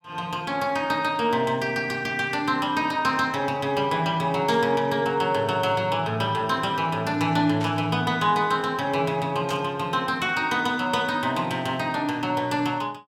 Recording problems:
static burst; at 4.5 s, at 7.5 s and at 9.5 s; peak -9 dB vs average level

